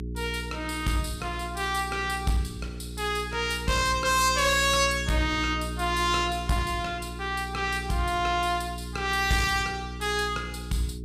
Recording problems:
distortion; hard clipping, uneven, signal-to-distortion ratio 11 dB
electrical hum; 60 Hz, harmonics up to 420 Hz, SNR 10 dB

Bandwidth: 15 kHz